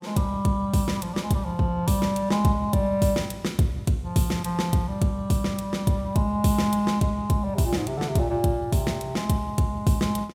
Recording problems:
none

